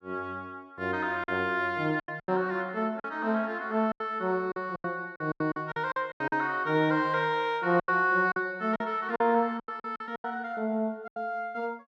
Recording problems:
packet loss; 11% of the sound replaced, filled with silence

